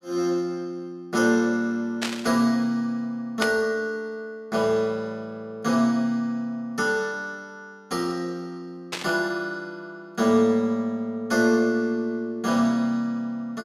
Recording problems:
burst of static; at 2 s, at 3.5 s and at 9 s; peak +2 dB vs average level

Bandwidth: 15.5 kHz